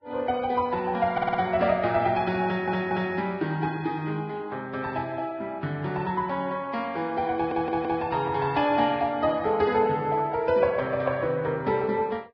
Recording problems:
lossy codec; Vorbis, log-spectral distance 2 dB
audio stuttering; at 1 s, at 2.5 s and at 7.5 s

